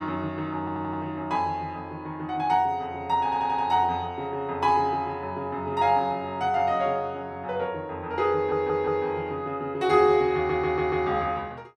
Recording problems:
stutter; 4 times, first at 0.5 s

